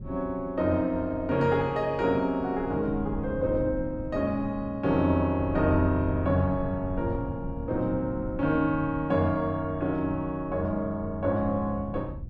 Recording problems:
wind noise; below 150 Hz, SNR 13 dB

